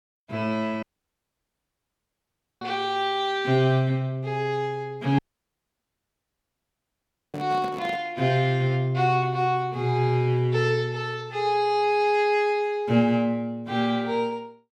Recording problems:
audio cutting out; at 1 s for 2 s and at 5 s for 2 s
microphone handling noise; at 7.5 s; peak -9 dB vs average level

